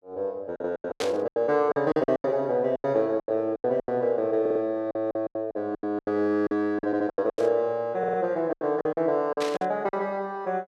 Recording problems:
packet loss; 17% of the sound replaced, filled with silence
burst of static; at 1 s, at 7.5 s and at 9.5 s; peak -2 dB vs average level
stutter; at 4.5 s, at 7 s and at 8 s

